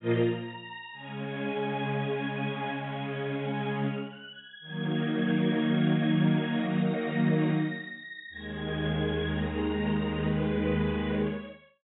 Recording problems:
treble cut off; nothing above 3.7 kHz

